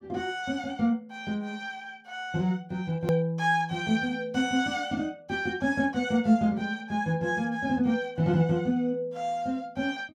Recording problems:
hard cut with a click; at 3 s

